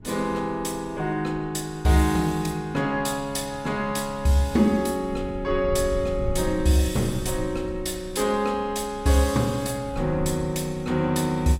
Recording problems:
wind on the microphone; below 110 Hz, SNR 14 dB

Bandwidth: 16 kHz